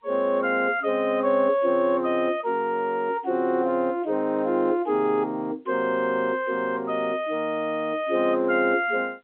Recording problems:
telephone audio; 280 Hz to 3.5 kHz, G.711

